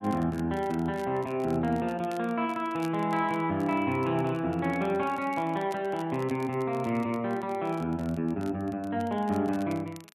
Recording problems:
crackle; vinyl, SNR 24 dB

